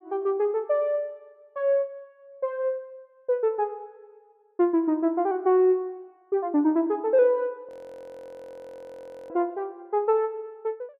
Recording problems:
frozen audio; at 7.5 s for 1.5 s

